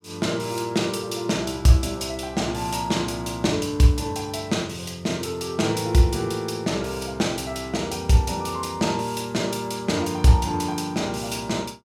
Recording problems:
none

